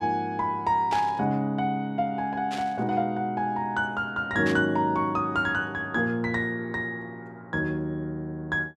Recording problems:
static burst; at 1 s, at 2.5 s and at 4.5 s; peak -5 dB vs average level

